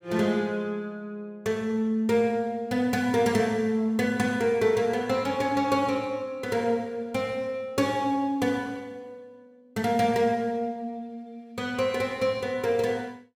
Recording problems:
none

